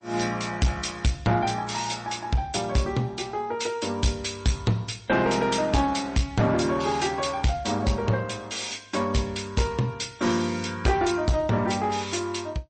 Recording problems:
codec artefacts; MP3, log-spectral distance 4 dB, nothing above 8.2 kHz
distorted audio; hard clipping, uneven, signal-to-distortion ratio 11 dB

